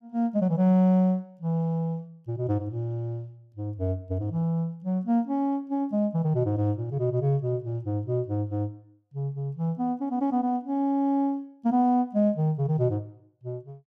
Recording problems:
none

